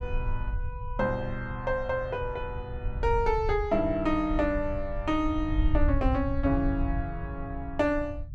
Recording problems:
rumble; below 80 Hz, SNR 5 dB

